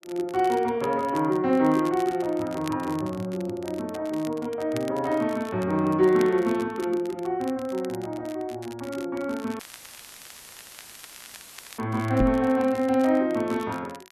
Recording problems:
crackle; vinyl, SNR 21 dB
dropout; at 9.5 s for 2 s; filled with static
microphone thump; at 12 s; peak +6 dB vs average level

